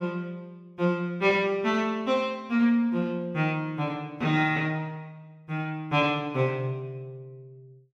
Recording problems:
none

